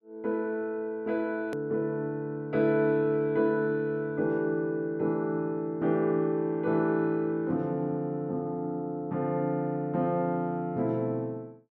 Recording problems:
hard cut with a click; at 1.5 s

